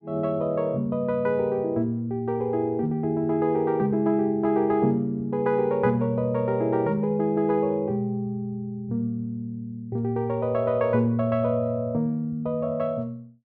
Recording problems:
none

